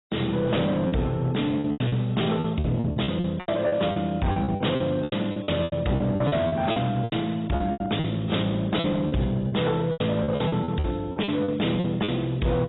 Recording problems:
codec artefacts; MP2, then AAC, log-spectral distance 4 dB, nothing above 3.8 kHz
distortion; hard clipping, signal-to-distortion ratio 12 dB
lost packets; 16% of the sound replaced, filled with repeated pitch periods

